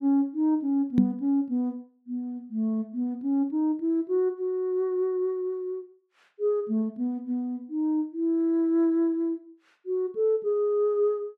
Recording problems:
microphone thump; at 1 s; peak +8 dB vs average level

